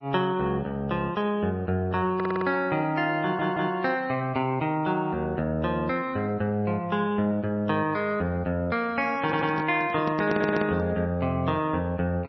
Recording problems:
lossy compression; MP2, then MP3, log-spectral distance 2 dB, nothing above 5 kHz
stutter; 4 times, first at 2 s
handling noise; from 9 to 11 s; peak -1 dB vs average level

